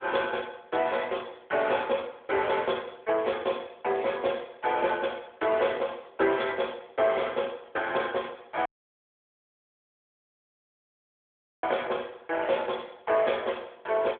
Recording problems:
phone line; 300 Hz to 3.6 kHz, AMR-NB
audio cutting out; at 8.5 s for 3 s

